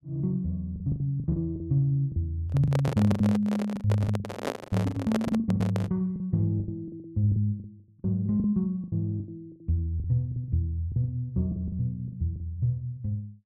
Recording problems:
lost packets; 15% of the sound replaced, filled with the last packet
handling noise; from 2.5 to 6 s; peak +2 dB vs average level

